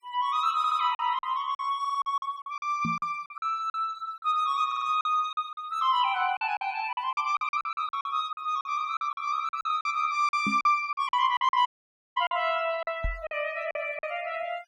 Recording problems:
denoising artefacts; signal-to-artefact ratio 25 dB
packet loss; 13% of the sound replaced, filled with silence
stutter; at 0.5 s, at 2 s and at 4.5 s
knock on the microphone; at 3 s, at 10 s and at 13 s; peak +1 dB vs average level
dropout; at 12 s for 0.5 s

